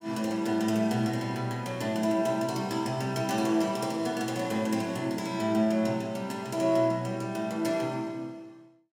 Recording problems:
none

